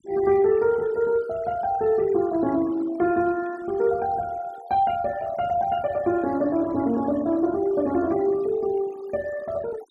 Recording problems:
noise reduction artefacts; signal-to-artefact ratio 22 dB

